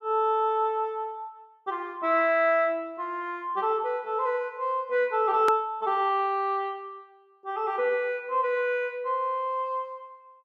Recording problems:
click at an edit; at 5.5 s

